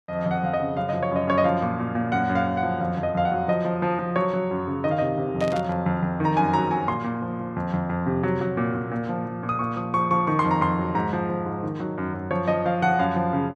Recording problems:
static burst; at 5.5 s; peak -10 dB vs average level

